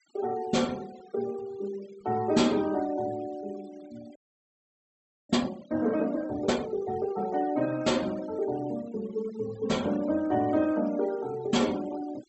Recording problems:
treble missing; nothing above 8 kHz
noise reduction artefacts; signal-to-artefact ratio 21 dB
audio freezing; at 4 s for 1 s

